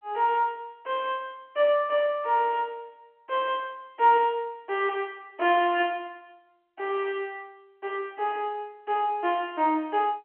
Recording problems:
telephone audio; 220 Hz to 3.1 kHz, G.711

